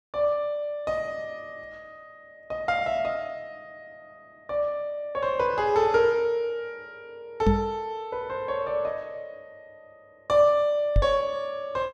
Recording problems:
microphone thump; at 7.5 s and at 11 s; peak +7 dB vs average level

